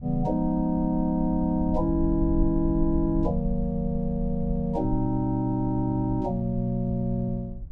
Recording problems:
low-frequency rumble; below 64 Hz, SNR 10 dB

